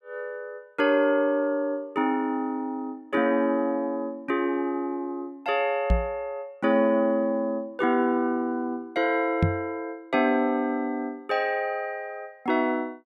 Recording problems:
knock on the microphone; at 6 s and at 9.5 s; peak +7 dB vs average level

